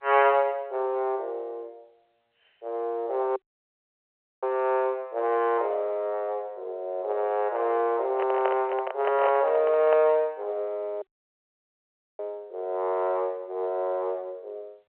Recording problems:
telephone audio; 340 Hz to 3.2 kHz, G.711
dropout; at 3.5 s for 1 s and at 11 s for 1 s
handling noise; from 8 to 10 s; peak +1 dB vs average level

